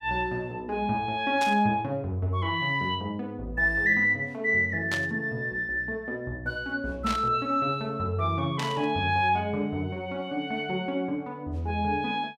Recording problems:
burst of static; 4 times, first at 1.5 s; peak -2 dB vs average level

